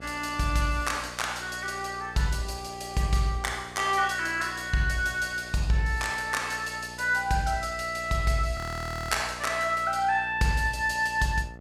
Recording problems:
hum; 60 Hz, harmonics up to 1.4 kHz, SNR 19 dB
audio freezing; at 8.5 s for 0.5 s

